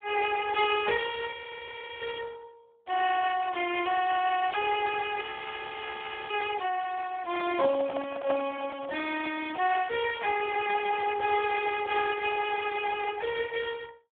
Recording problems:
phone line; 300 Hz to 2.3 kHz, Speex
audio freezing; at 1.5 s for 0.5 s and at 5 s for 1 s
handling noise; from 7.5 to 9.5 s; peak 0 dB vs average level

